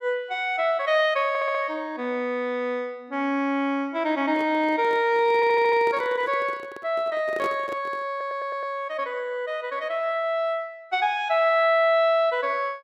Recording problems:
stutter; at 1.5 s, at 5.5 s and at 8 s
microphone handling noise; from 4.5 to 8 s; peak -4 dB vs average level

